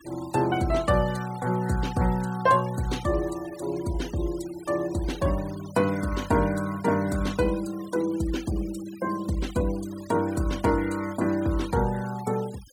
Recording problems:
noise reduction artefacts; signal-to-artefact ratio 18 dB

